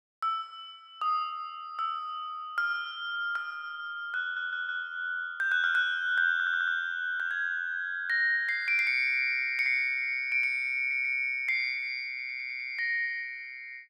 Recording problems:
audio stuttering; 4 times, first at 4 s

